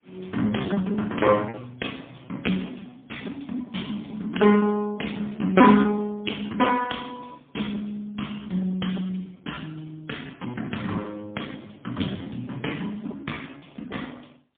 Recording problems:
telephone audio; 150 Hz to 3.4 kHz, AMR-NB, then MP3
lost packets; 15% of the sound replaced, filled with repeated pitch periods

